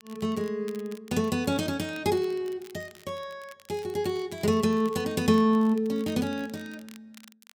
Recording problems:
crackle; vinyl, SNR 25 dB

